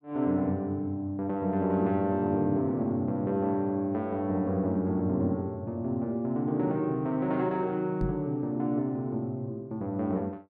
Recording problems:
microphone thump; at 8 s; peak +1 dB vs average level

